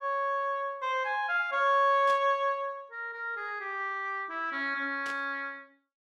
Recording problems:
burst of static; at 2 s and at 5 s; peak -10 dB vs average level

